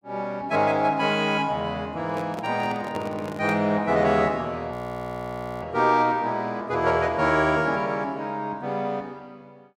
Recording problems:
handling noise; from 2 to 3.5 s; peak -4 dB vs average level
frozen audio; at 4.5 s for 1 s

